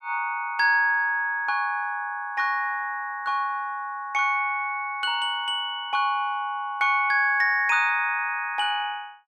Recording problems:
none

